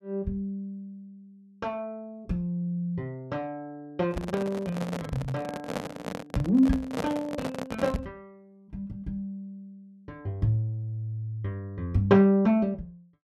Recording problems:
handling noise; from 4 to 8 s; peak +2 dB vs average level

